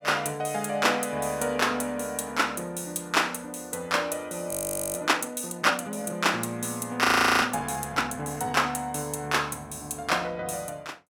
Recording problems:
audio freezing; at 4.5 s and at 7 s

